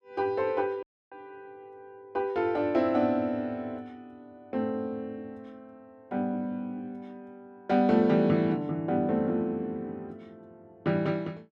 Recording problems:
dropout; at 1 s

